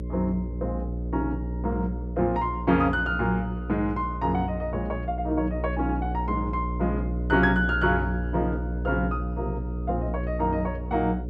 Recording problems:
hum; 60 Hz, harmonics up to 540 Hz, SNR 4 dB

